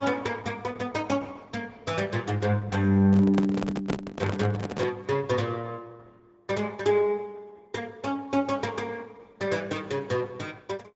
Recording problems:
low-pass filter; nothing above 7.6 kHz
codec artefacts; Opus, log-spectral distance 3 dB
microphone handling noise; from 3 to 5 s; peak +5 dB vs average level

